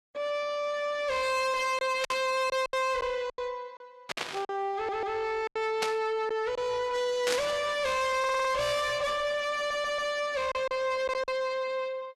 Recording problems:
lossy codec; Vorbis, log-spectral distance 2 dB, nothing above 12.7 kHz
distortion; soft clipping, signal-to-distortion ratio 7 dB
packet loss; 5% of the sound replaced, filled with silence
burst of static; 4 times, first at 2 s; peak +2 dB vs average level
audio stuttering; at 5 s, at 8 s and at 9.5 s

